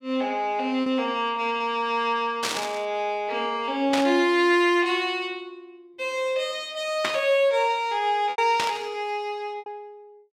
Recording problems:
lost packets; 2% of the sound replaced, filled with repeated pitch periods
static burst; 4 times, first at 2.5 s; peak +2 dB vs average level

